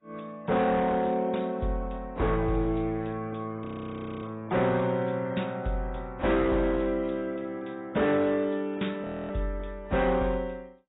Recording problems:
lossy compression; AAC, log-spectral distance 3 dB, nothing above 3.8 kHz
distorted audio; hard clipping, signal-to-distortion ratio 11 dB
frozen audio; at 3.5 s for 0.5 s and at 9 s

